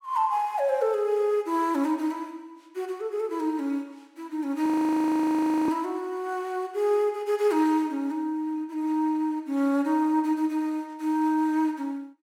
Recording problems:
audio freezing; at 4.5 s for 1 s

